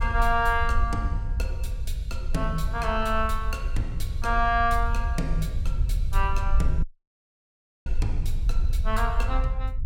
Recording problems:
rumble; below 58 Hz, SNR 1 dB
dropout; at 7 s for 1 s

